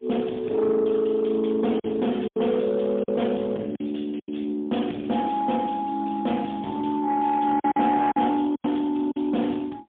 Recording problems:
telephone audio; 150 Hz to 3.4 kHz, AMR-NB, then MP3
distorted audio; soft clipping, signal-to-distortion ratio 12 dB
lost packets; 5% of the sound replaced, filled with silence

